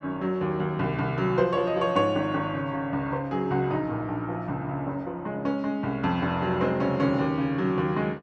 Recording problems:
none

